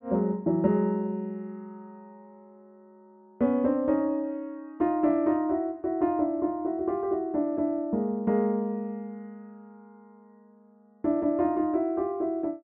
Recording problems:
none

